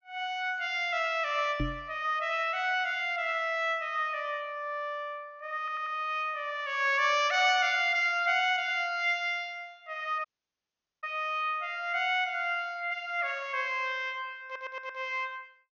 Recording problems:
low-pass filter; nothing above 6.7 kHz
microphone thump; at 1.5 s; peak 0 dB vs average level
audio stuttering; at 5.5 s and at 14 s
audio cutting out; at 10 s for 1 s

